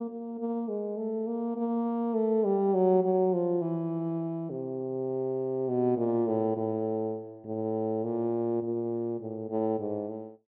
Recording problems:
none

